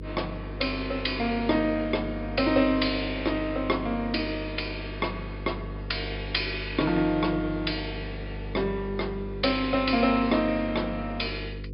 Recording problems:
treble missing; nothing above 5.5 kHz
hum; 50 Hz, harmonics up to 500 Hz, SNR 10 dB

